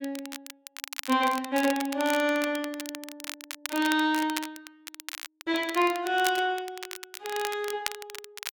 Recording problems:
crackle; vinyl, SNR 11 dB

